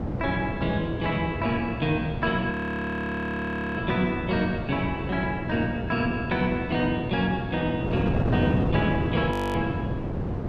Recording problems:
electrical hum; 60 Hz, harmonics up to 600 Hz, SNR 15 dB
wind noise; below 380 Hz, SNR 3 dB
audio freezing; at 2.5 s for 1.5 s and at 9.5 s

